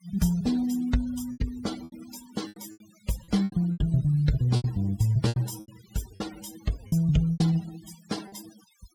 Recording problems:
denoising artefacts; signal-to-artefact ratio 18 dB
packet loss; 12% of the sound replaced, filled with repeated pitch periods

